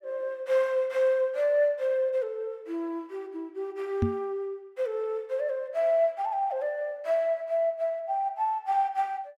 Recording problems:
microphone bump; at 4 s; peak +6 dB vs average level

